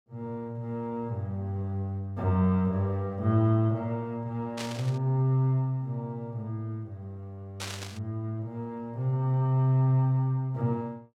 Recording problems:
static burst; at 4.5 s and at 7.5 s; peak -3 dB vs average level

